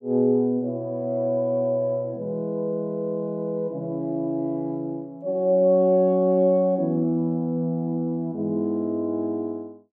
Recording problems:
none

